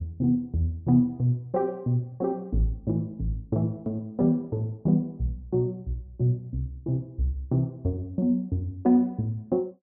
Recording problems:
none

